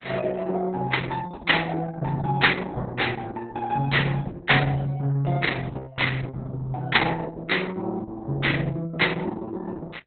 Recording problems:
codec artefacts; Opus, log-spectral distance 5 dB, nothing above 4.1 kHz

